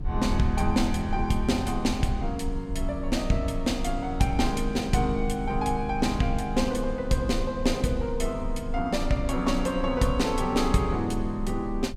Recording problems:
rumble; below 60 Hz, strongest tone 28 Hz, SNR 9 dB

